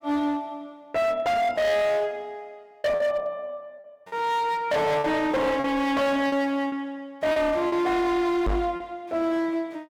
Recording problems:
distortion; hard clipping, signal-to-distortion ratio 7 dB
lost packets; 4% of the sound replaced, filled with repeated pitch periods
microphone bump; at 8.5 s; peak +1 dB vs average level

